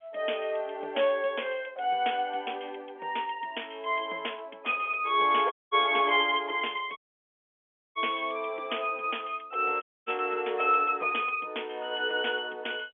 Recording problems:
telephone audio; 300 Hz to 3.4 kHz, G.711
audio cutting out; at 5.5 s, at 7 s for 1 s and at 10 s

